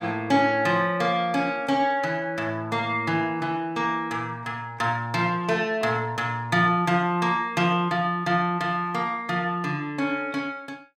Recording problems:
none

